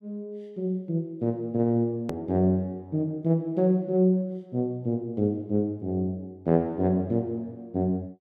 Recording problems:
hard cut with a click; at 2 s

